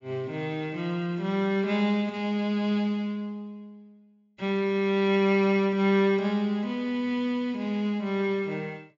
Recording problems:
treble missing; nothing above 7.3 kHz

